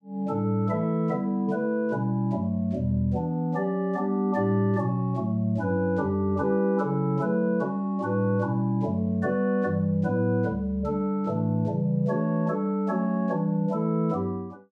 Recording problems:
none

